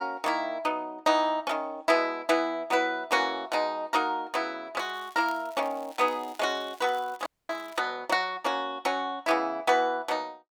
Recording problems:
crackling; from 5 to 8 s; loose cable, SNR 25 dB
audio freezing; at 7.5 s

